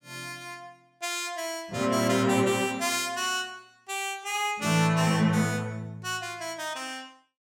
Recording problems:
none

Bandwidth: 17.5 kHz